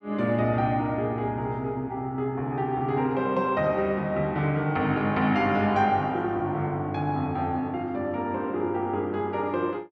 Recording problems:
none

